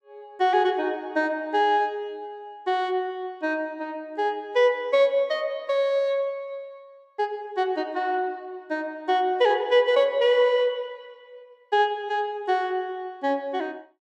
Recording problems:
none

